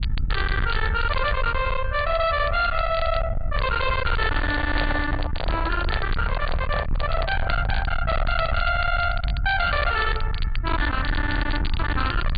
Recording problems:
treble cut off; nothing above 4.7 kHz
distorted audio; soft clipping, signal-to-distortion ratio 6 dB
rumble; below 130 Hz, SNR 3 dB
crackling; vinyl, SNR 15 dB
handling noise; from 4 to 8 s; peak 0 dB vs average level

